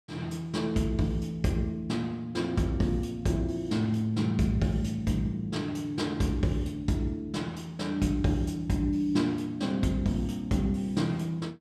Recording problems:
none

